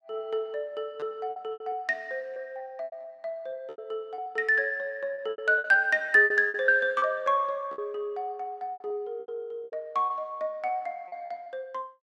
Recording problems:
lost packets; 12% of the sound replaced, filled with repeated pitch periods

